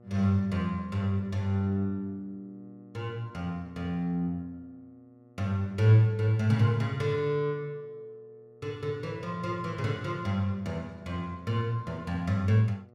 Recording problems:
electrical hum; 60 Hz, harmonics up to 1.3 kHz, SNR 27 dB

